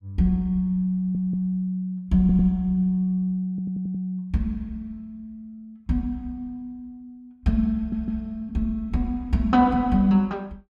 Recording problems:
stutter; 4 times, first at 1 s

